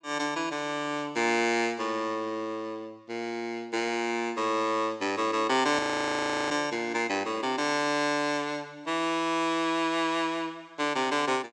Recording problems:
audio freezing; at 6 s for 0.5 s

